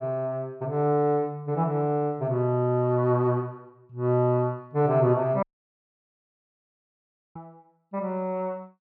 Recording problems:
audio cutting out; at 5.5 s for 2 s

